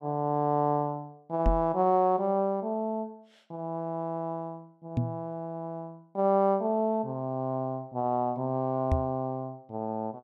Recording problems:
microphone thump; at 1.5 s, at 5 s and at 9 s; peak +5 dB vs average level

